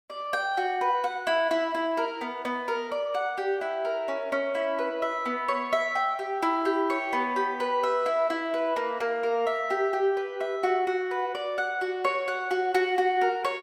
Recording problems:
none

